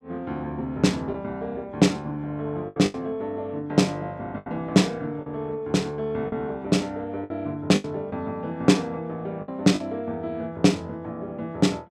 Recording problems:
packet loss; 5% of the sound replaced, filled with the last packet

